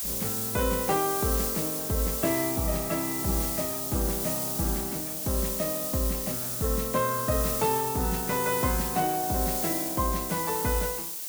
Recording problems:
background hiss; SNR 0 dB

